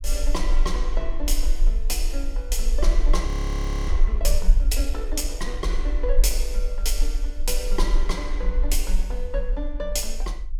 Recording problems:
rumble; below 40 Hz, strongest tone 22 Hz, SNR -4 dB
audio freezing; at 3.5 s for 0.5 s

